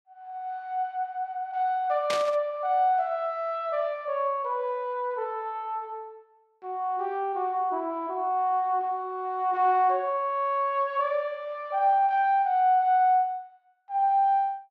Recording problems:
static burst; at 2 s; peak -1 dB vs average level

